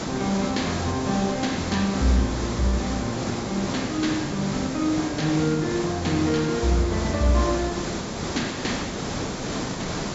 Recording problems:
treble cut off; nothing above 8 kHz
background hiss; SNR 4 dB

